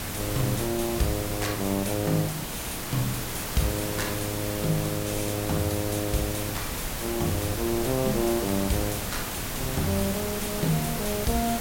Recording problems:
background hiss; slope -3 dB per octave, SNR 2 dB
low-frequency rumble; below 100 Hz, SNR 14 dB

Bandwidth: 16.5 kHz